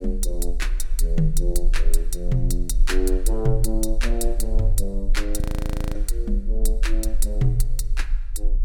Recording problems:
low-frequency rumble; below 36 Hz, strongest tone 20 Hz, SNR -1 dB
frozen audio; at 5.5 s for 0.5 s

